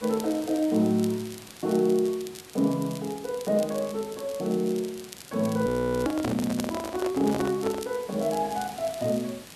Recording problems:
background hiss; slope -2 dB per octave, SNR 18 dB
crackling; vinyl, SNR 18 dB
handling noise; from 5.5 to 8 s; peak 0 dB vs average level
audio freezing; at 5.5 s

